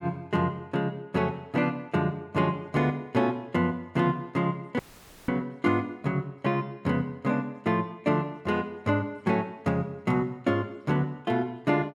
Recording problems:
audio cutting out; at 5 s

